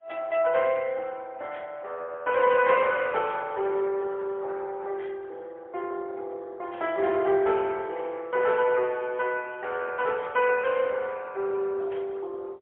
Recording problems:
telephone audio; 340 Hz to 3.2 kHz, AMR-NB, then MP3

